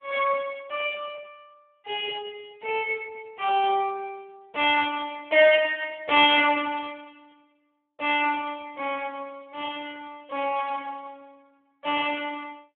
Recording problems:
telephone audio; 320 Hz to 3.3 kHz, Speex

